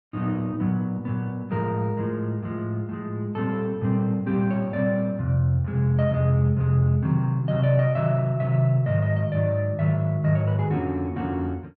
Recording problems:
none

